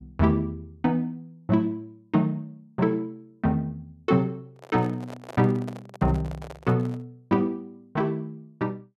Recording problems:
microphone handling noise; from 4.5 to 7 s; peak -8 dB vs average level

